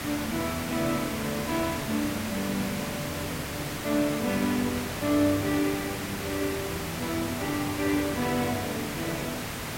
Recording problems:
hiss; slope -3 dB per octave, SNR 4 dB

